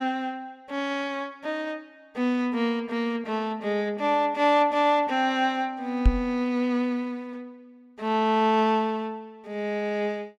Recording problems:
microphone thump; at 6 s; peak +8 dB vs average level

